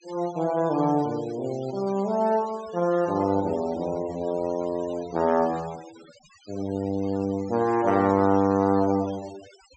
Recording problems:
low-pass filter; nothing above 8 kHz
denoising artefacts; signal-to-artefact ratio 21 dB

